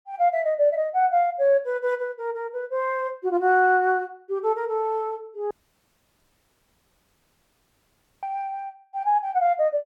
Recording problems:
dropout; at 5.5 s for 2.5 s

